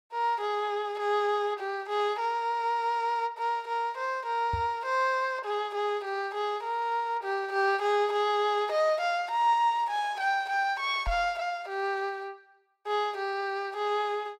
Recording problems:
knock on the microphone; at 4.5 s and at 11 s; peak -2 dB vs average level

